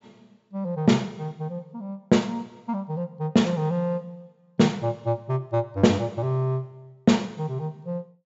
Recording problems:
treble cut off; nothing above 8 kHz

